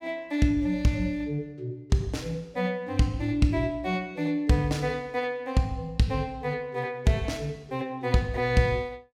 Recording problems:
none

